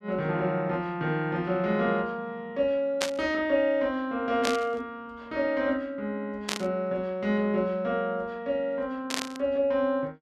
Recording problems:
burst of static; 4 times, first at 3 s; peak +4 dB vs average level

